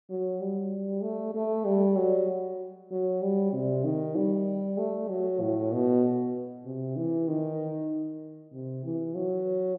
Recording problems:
none

